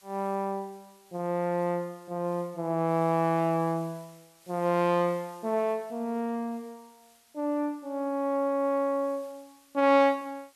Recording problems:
background hiss; slope +1 dB per octave, SNR 28 dB

